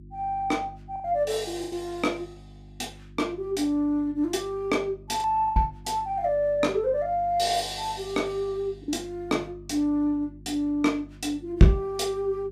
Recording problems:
hum; 50 Hz, harmonics up to 350 Hz, SNR 20 dB
lost packets; 3% of the sound replaced, filled with the last packet

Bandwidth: 15 kHz